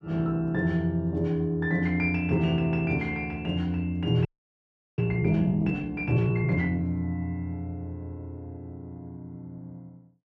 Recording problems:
frozen audio; at 4.5 s for 0.5 s

